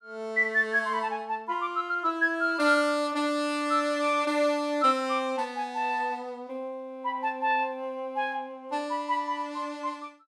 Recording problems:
none

